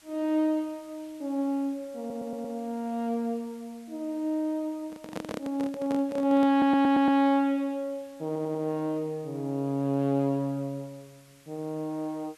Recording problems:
background hiss; SNR 28 dB
audio stuttering; at 2 s, at 6.5 s and at 8.5 s
handling noise; from 5 to 7 s; peak -3 dB vs average level

